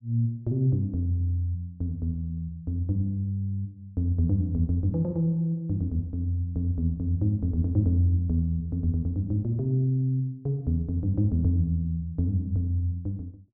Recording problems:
none

